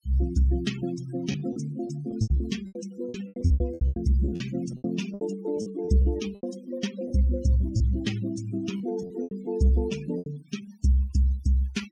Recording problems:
denoising artefacts; signal-to-artefact ratio 16 dB
packet loss; 12% of the sound replaced, filled with repeated pitch periods

